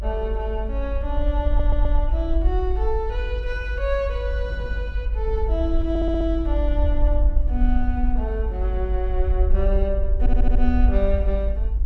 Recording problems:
low-frequency rumble; below 52 Hz, SNR -4 dB
wind on the microphone; below 150 Hz, SNR 14 dB
stutter; at 1.5 s, at 6 s and at 10 s

